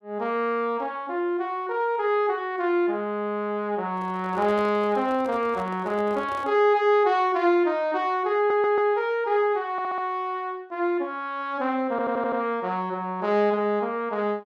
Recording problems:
handling noise; from 4 to 6.5 s; peak -11 dB vs average level
stutter; at 8.5 s, at 9.5 s and at 12 s

